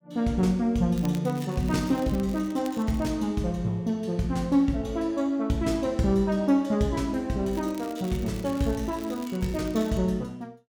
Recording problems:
crackle; from 1 to 3 s and from 7.5 to 10 s; loose cable, SNR 21 dB

